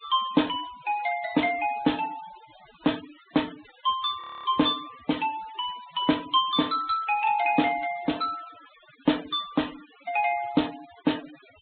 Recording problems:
treble cut off; nothing above 4 kHz
denoising artefacts; signal-to-artefact ratio 19 dB
audio freezing; at 4 s

